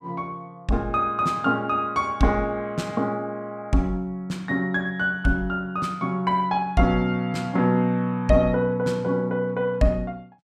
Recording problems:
none

